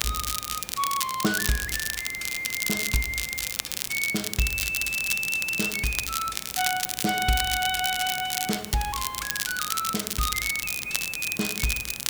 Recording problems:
hiss; slope -4 dB per octave, SNR 17 dB
crackling; vinyl, SNR 2 dB

